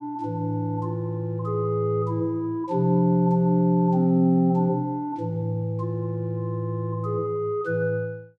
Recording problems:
none

